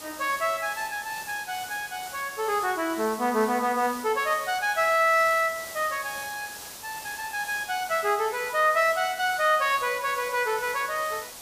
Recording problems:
background hiss; slope -1 dB per octave, SNR 13 dB

